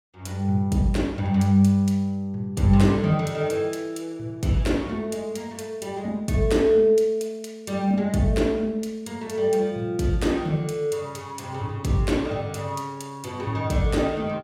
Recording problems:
none

